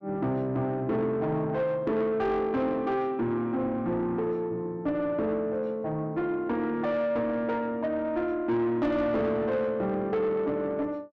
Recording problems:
distorted audio; soft clipping, signal-to-distortion ratio 12 dB

